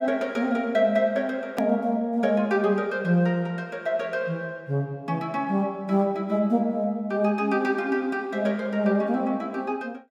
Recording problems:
edit click; at 1.5 s

